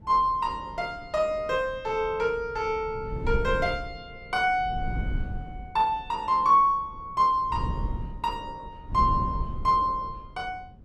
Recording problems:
wind noise; below 130 Hz, SNR 10 dB

